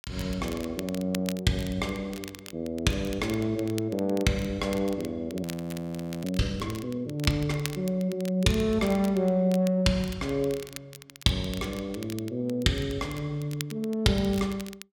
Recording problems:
crackling; vinyl, SNR 16 dB
frozen audio; at 5.5 s for 1 s

